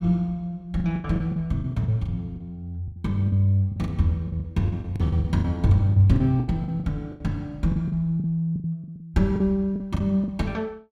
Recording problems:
lost packets; 16% of the sound replaced, filled with the last packet

